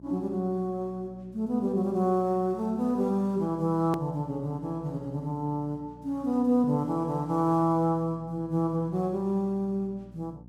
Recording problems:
electrical hum; 60 Hz, harmonics up to 660 Hz, SNR 21 dB
hard cut with a click; at 4 s

